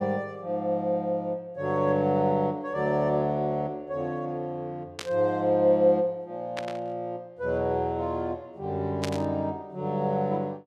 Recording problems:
static burst; at 5 s, at 6.5 s and at 9 s; peak -1 dB vs average level

